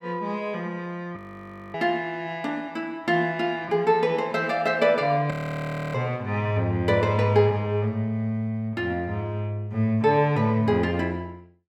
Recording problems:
audio freezing; at 1 s for 0.5 s and at 5.5 s for 0.5 s

